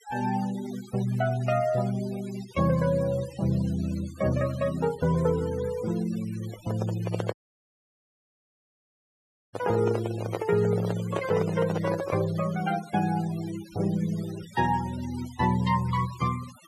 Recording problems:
noise reduction artefacts; signal-to-artefact ratio 17 dB
microphone handling noise; from 6.5 to 12 s; peak +2 dB vs average level
audio cutting out; at 7.5 s for 2 s

